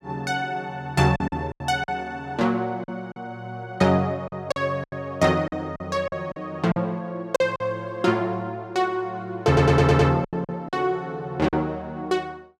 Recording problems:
packet loss; 8% of the sound replaced, filled with silence
audio stuttering; at 9.5 s

